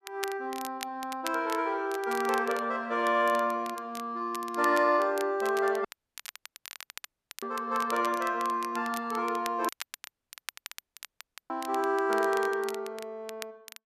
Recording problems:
crackling; vinyl, SNR 15 dB
audio cutting out; at 6 s for 1.5 s and at 9.5 s for 2 s

